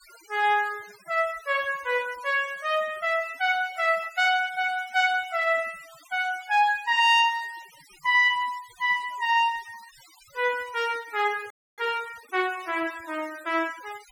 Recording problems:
denoising artefacts; signal-to-artefact ratio 22 dB
frozen audio; at 12 s

